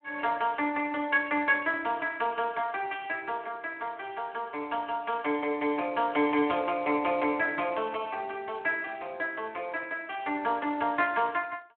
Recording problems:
phone line; 240 Hz to 3.3 kHz, Speex

